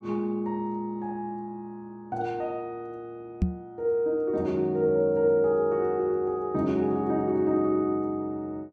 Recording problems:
knock on the microphone; at 3.5 s; peak +6 dB vs average level

